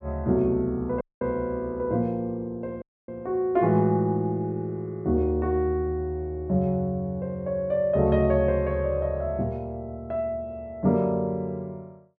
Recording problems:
dropout; at 1 s and at 3 s

